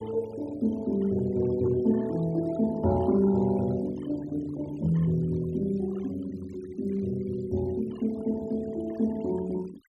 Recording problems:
noise reduction artefacts; signal-to-artefact ratio 22 dB

